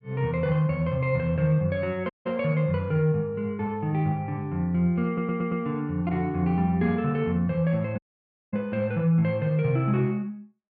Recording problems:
dropout; at 2 s and at 8 s for 0.5 s
stutter; at 5 s

